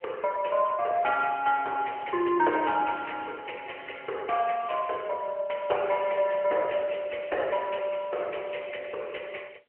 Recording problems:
phone line; 370 Hz to 3.4 kHz, AMR-NB

